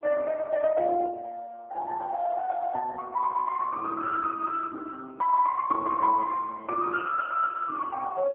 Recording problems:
telephone audio; 280 Hz to 2.1 kHz, AMR-NB

